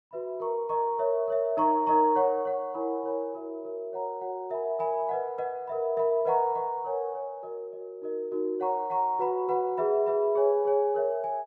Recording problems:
none

